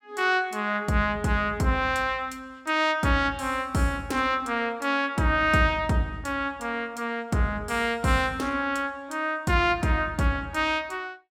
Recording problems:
none

